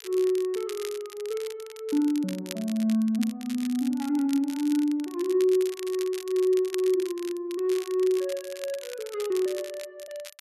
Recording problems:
crackle; vinyl, SNR 16 dB

